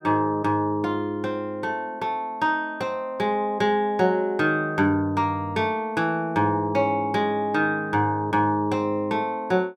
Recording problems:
none

